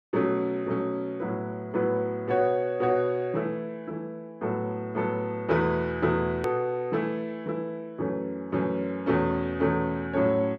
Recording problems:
edit click; at 6.5 s

